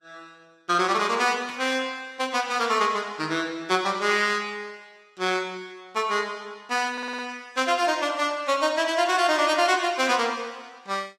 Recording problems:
lossy codec; Vorbis, log-spectral distance 3 dB, nothing above 15.1 kHz
burst of static; at 1.5 s; peak -13 dB vs average level
audio stuttering; at 7 s

